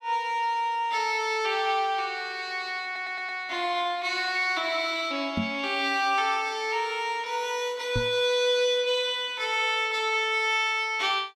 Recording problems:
stutter; at 3 s
microphone bump; at 5.5 s and at 8 s; peak 0 dB vs average level

